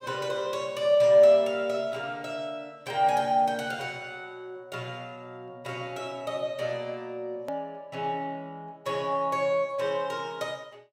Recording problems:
hard cut with a click; at 7.5 s

